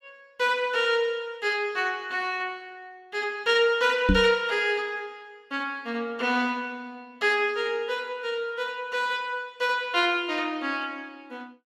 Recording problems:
knock on the microphone; at 4 s; peak +7 dB vs average level

